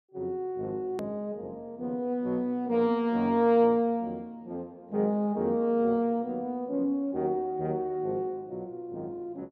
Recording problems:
hard cut with a click; at 1 s

